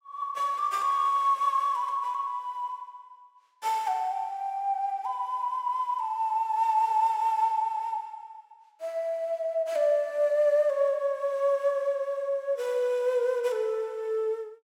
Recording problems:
none

